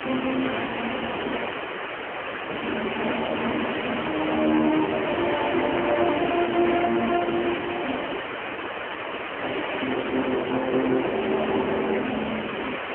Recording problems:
telephone audio; 260 Hz to 3.2 kHz, AMR-NB
distortion; hard clipping, signal-to-distortion ratio 8 dB
background hiss; SNR 5 dB
audio cutting out; at 1.5 s for 1 s and at 8 s for 1 s

